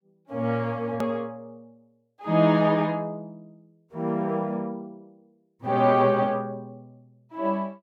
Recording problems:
edit click; at 1 s

